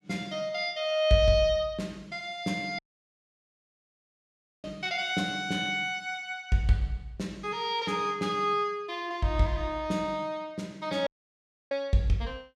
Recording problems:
audio cutting out; at 3 s for 2 s and at 11 s for 0.5 s

